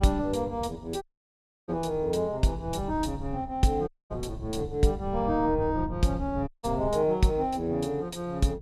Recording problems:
wind noise; below 120 Hz, SNR 12 dB
dropout; at 1 s for 0.5 s, at 4 s and at 6.5 s

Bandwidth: 15.5 kHz